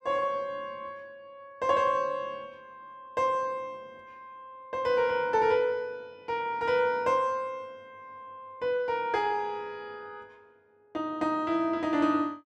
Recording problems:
none

